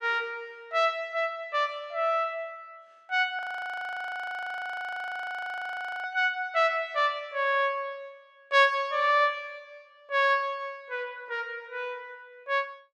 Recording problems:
frozen audio; at 3.5 s for 2.5 s

